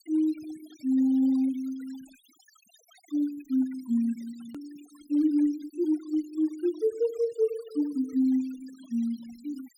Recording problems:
noise reduction artefacts; signal-to-artefact ratio 26 dB
edit click; at 4.5 s

